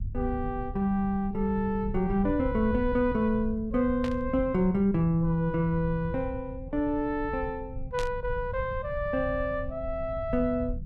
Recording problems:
low-frequency rumble; below 98 Hz, SNR 10 dB
burst of static; at 4 s and at 8 s; peak -6 dB vs average level

